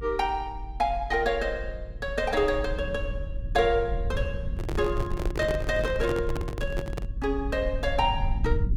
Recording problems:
low-frequency rumble; below 72 Hz, SNR 6 dB
microphone handling noise; from 4.5 to 7 s; peak 0 dB vs average level

